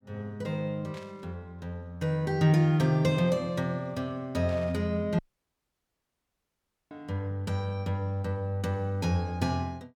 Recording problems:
burst of static; at 1 s and at 4.5 s; peak -14 dB vs average level
dropout; at 5 s for 1.5 s

